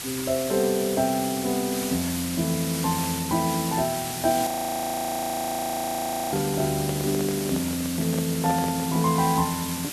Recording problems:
background hiss; slope 0 dB per octave, SNR 6 dB
frozen audio; at 4.5 s for 2 s
handling noise; from 6.5 to 9 s; peak -4 dB vs average level

